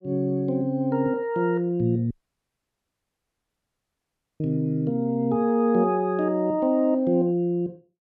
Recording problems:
dropout; at 2 s for 2.5 s

